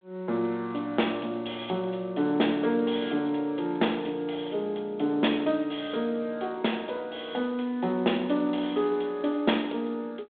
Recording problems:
phone line; 190 Hz to 3.6 kHz, G.726

